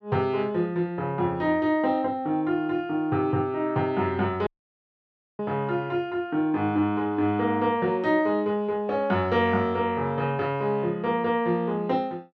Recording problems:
audio cutting out; at 4.5 s for 1 s

